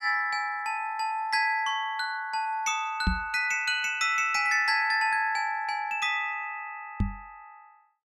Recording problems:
knock on the microphone; at 3 s and at 7 s; peak +3 dB vs average level

